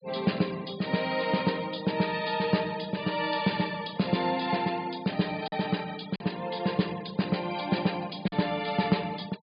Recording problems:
treble missing; nothing above 5 kHz
noise reduction artefacts; signal-to-artefact ratio 20 dB
lost packets; 1.3% of the sound replaced, filled with silence

